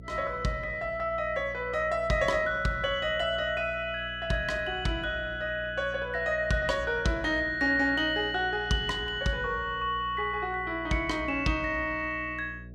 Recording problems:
electrical hum; 60 Hz, harmonics up to 660 Hz, SNR 17 dB

